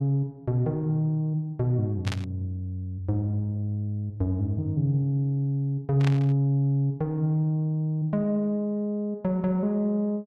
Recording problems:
burst of static; at 2 s and at 6 s; peak -4 dB vs average level

